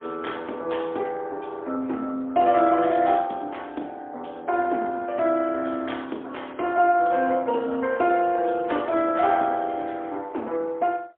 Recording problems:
telephone audio; 240 Hz to 3.5 kHz, AMR-NB, then MP3

